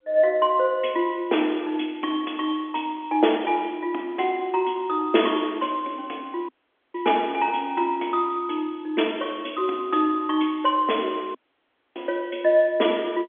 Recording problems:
telephone audio; 240 Hz to 3.4 kHz, G.711
dropout; at 6.5 s and at 11 s for 0.5 s

